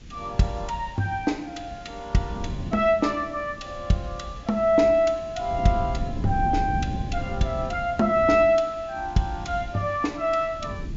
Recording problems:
treble cut off; nothing above 7.4 kHz
hiss; SNR 28 dB
wind noise; below 190 Hz, SNR 11 dB

